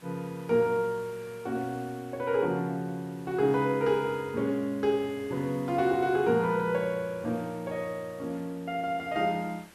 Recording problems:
hiss; SNR 24 dB

